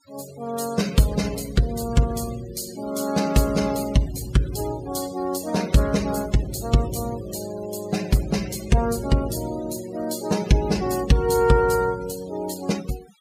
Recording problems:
noise reduction artefacts; signal-to-artefact ratio 17 dB

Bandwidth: 15.5 kHz